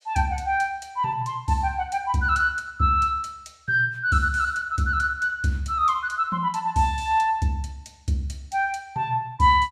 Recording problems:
none

